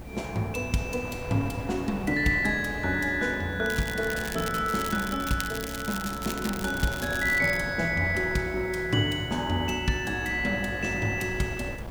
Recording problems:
electrical hum; 60 Hz, harmonics up to 360 Hz, SNR 17 dB
hiss; slope 0 dB per octave, SNR 29 dB
wind on the microphone; below 700 Hz, SNR 14 dB
crackle; from 3.5 to 7.5 s; loose cable, SNR 11 dB

